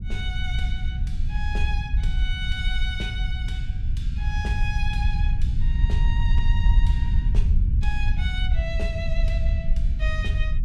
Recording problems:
rumble; below 70 Hz, SNR -9 dB

